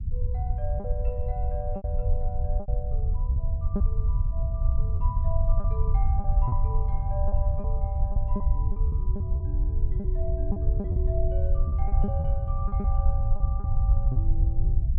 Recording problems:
rumble; below 76 Hz, SNR -12 dB
lost packets; 9% of the sound replaced, filled with repeated pitch periods

